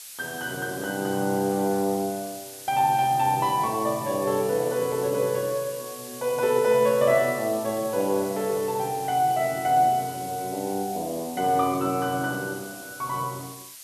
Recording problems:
hiss; slope +4 dB per octave, SNR 14 dB

